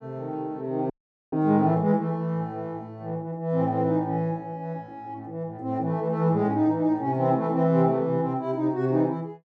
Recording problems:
audio cutting out; at 1 s

